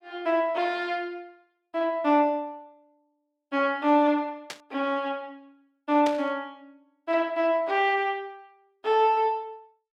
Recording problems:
static burst; at 4.5 s and at 6 s; peak -5 dB vs average level

